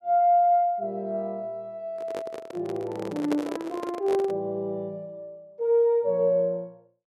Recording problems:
microphone handling noise; from 2 to 4.5 s; peak 0 dB vs average level

